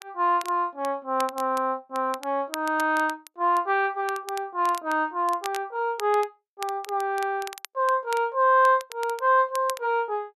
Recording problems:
crackle; vinyl, SNR 18 dB

